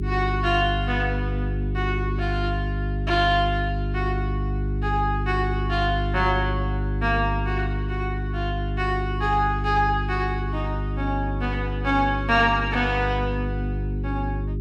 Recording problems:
mains hum; 50 Hz, harmonics up to 400 Hz, SNR 2 dB

